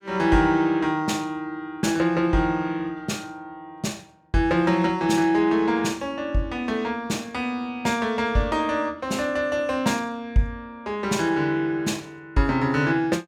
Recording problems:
none

